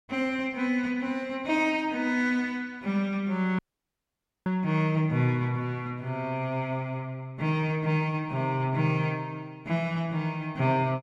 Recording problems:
audio cutting out; at 3.5 s for 1 s

